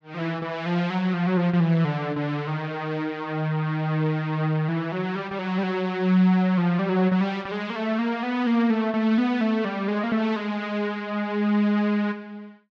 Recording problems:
none

